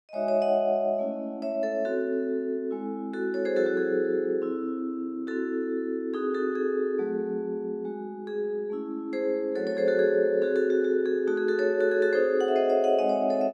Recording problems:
none

